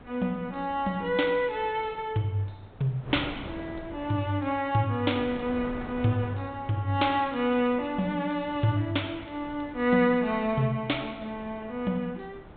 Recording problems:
low-pass filter; nothing above 4 kHz
wind on the microphone; below 750 Hz, SNR 17 dB

